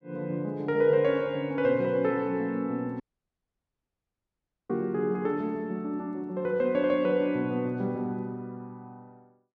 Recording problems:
dropout; at 3 s for 1.5 s

